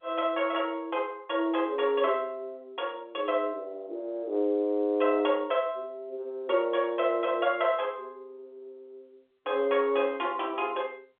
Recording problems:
phone line; 280 Hz to 3.7 kHz, G.711

